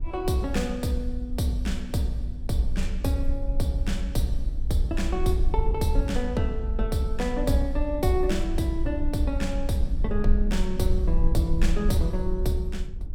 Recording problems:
rumble; below 48 Hz, strongest tone 20 Hz, SNR 3 dB

